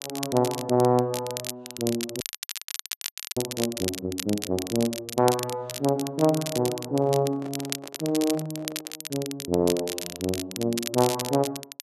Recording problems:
crackling; vinyl, SNR 7 dB
frozen audio; at 2 s for 1 s
microphone handling noise; from 7 to 9 s; peak -11 dB vs average level

